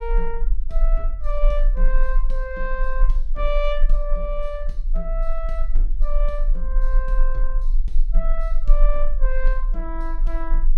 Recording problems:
rumble; below 32 Hz, strongest tone 24 Hz, SNR -7 dB

